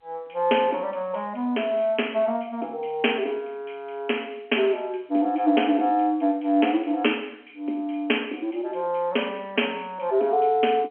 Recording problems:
telephone audio; 260 Hz to 3.3 kHz, G.711

